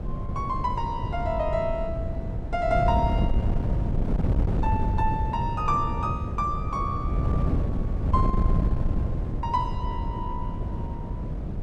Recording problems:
wind on the microphone; below 160 Hz, SNR -1 dB

